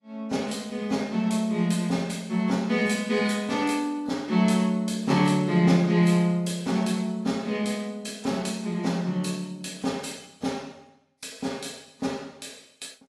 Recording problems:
codec artefacts; AAC, log-spectral distance 3 dB, nothing above 11.3 kHz

